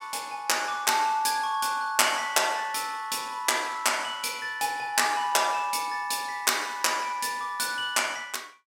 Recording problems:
none

